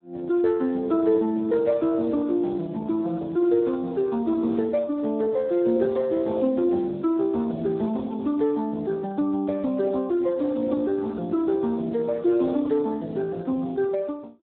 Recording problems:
phone line; 240 Hz to 2.1 kHz, Speex

